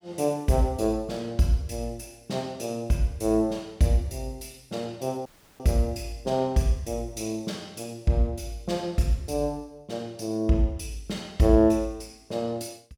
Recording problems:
dropout; at 5.5 s

